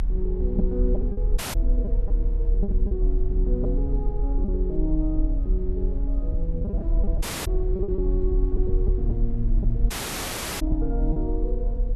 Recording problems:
low-frequency rumble; below 44 Hz, strongest tone 38 Hz, SNR -5 dB
lost packets; 5% of the sound replaced, filled with repeated pitch periods
dropout; at 1.5 s, at 7 s and at 10 s for 0.5 s

